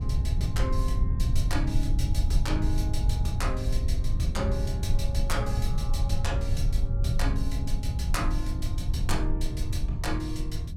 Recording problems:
low-frequency rumble; below 88 Hz, SNR -5 dB

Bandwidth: 16.5 kHz